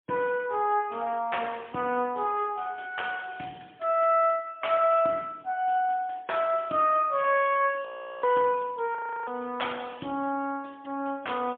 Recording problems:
telephone audio; 190 Hz to 3.4 kHz, AMR-NB, then MP3
audio freezing; at 8 s and at 9 s

